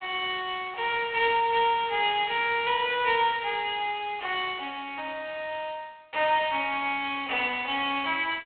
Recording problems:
phone line; 300 Hz to 3.7 kHz, G.726

